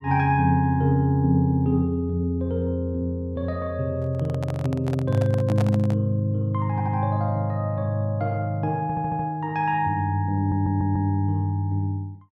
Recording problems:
microphone handling noise; from 4 to 6 s; peak -3 dB vs average level
audio stuttering; at 6.5 s, at 9 s and at 10 s

